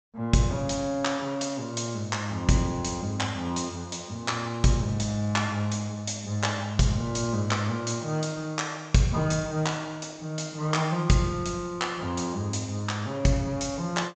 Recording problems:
treble missing; nothing above 8 kHz

